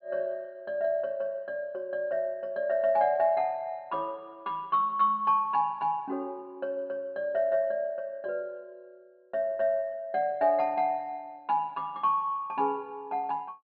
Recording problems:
low-pass filter; nothing above 5.1 kHz

